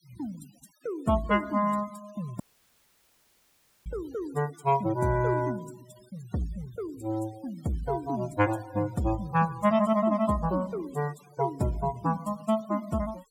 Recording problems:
noise reduction artefacts; signal-to-artefact ratio 21 dB
audio cutting out; at 2.5 s for 1.5 s

